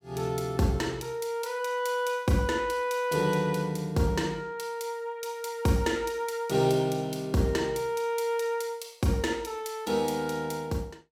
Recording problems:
none

